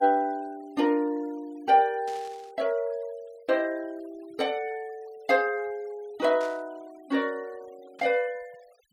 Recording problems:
denoising artefacts; signal-to-artefact ratio 27 dB
static burst; at 2 s, at 6.5 s and at 8 s; peak -14 dB vs average level

